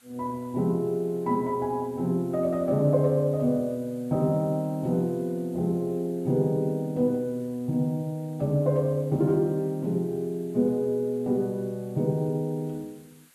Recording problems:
hiss; SNR 29 dB

